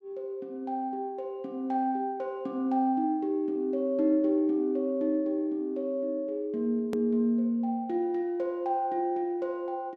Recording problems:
edit click; at 7 s

